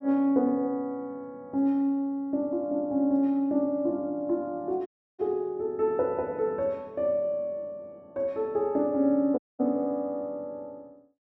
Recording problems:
dropout; at 5 s and at 9.5 s

